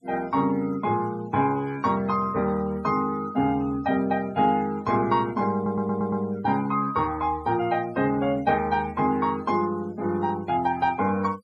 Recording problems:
noise reduction artefacts; signal-to-artefact ratio 23 dB
audio stuttering; at 5.5 s

